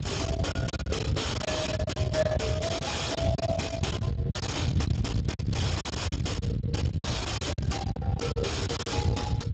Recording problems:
lossy compression; Speex, log-spectral distance 4 dB, nothing above 7.3 kHz
distorted audio; soft clipping, signal-to-distortion ratio 7 dB
rumble; below 190 Hz, SNR -1 dB
lost packets; 14% of the sound replaced, filled with silence

